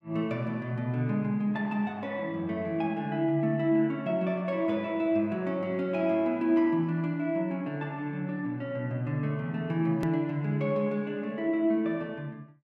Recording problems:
click at an edit; at 10 s

